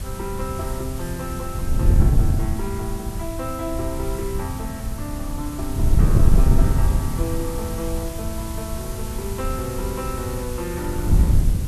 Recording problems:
hiss; slope -1 dB per octave, SNR 7 dB
wind noise; below 100 Hz, SNR -6 dB

